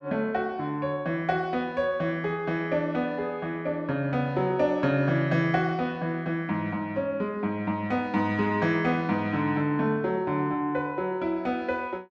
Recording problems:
none

